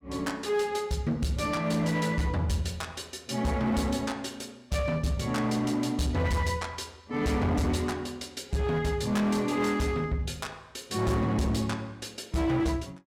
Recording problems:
distorted audio; hard clipping, signal-to-distortion ratio 10 dB

